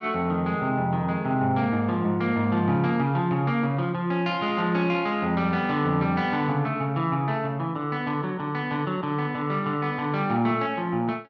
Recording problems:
none

